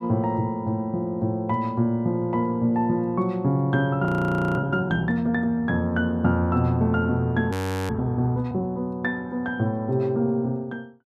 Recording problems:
audio freezing; at 4 s for 0.5 s and at 7.5 s

